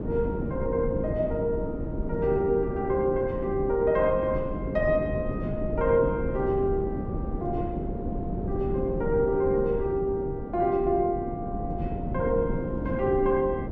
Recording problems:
wind on the microphone; below 310 Hz, SNR 5 dB

